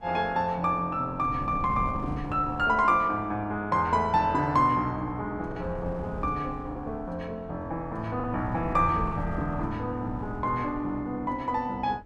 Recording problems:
wind noise; below 170 Hz, SNR 13 dB
lost packets; 1.7% of the sound replaced, filled with the last packet

